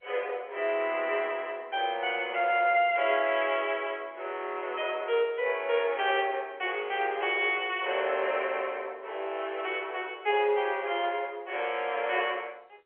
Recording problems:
telephone audio; 340 Hz to 3.3 kHz, G.711

